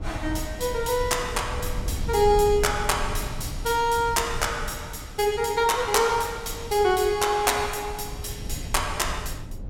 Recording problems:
low-frequency rumble; below 110 Hz, SNR 11 dB

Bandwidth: 16.5 kHz